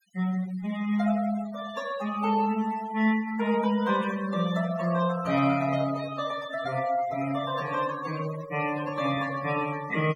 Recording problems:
noise reduction artefacts; signal-to-artefact ratio 15 dB

